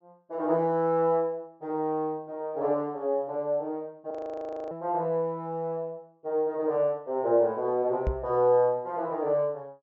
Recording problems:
treble cut off; nothing above 8 kHz
audio freezing; at 4 s for 0.5 s
knock on the microphone; at 8 s; peak +2 dB vs average level

